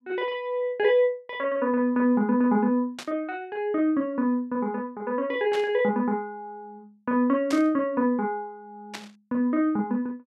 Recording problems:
burst of static; 4 times, first at 3 s; peak -5 dB vs average level

